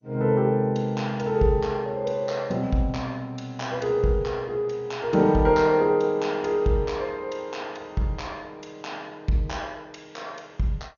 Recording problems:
codec artefacts; MP2, log-spectral distance 2 dB, nothing above 6.7 kHz

